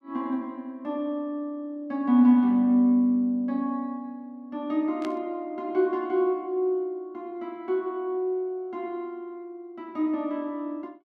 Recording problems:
burst of static; at 5 s; peak -10 dB vs average level

